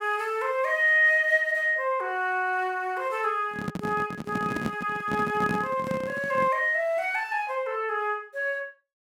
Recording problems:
microphone handling noise; from 3.5 to 6.5 s; peak 0 dB vs average level

